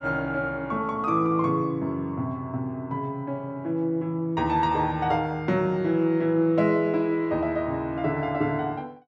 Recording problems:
none

